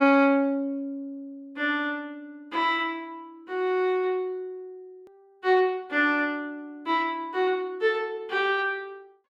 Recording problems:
edit click; at 5 s

